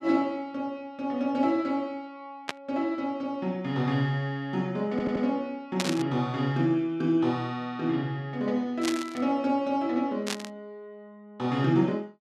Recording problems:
burst of static; 4 times, first at 2.5 s; peak +3 dB vs average level
audio stuttering; at 5 s

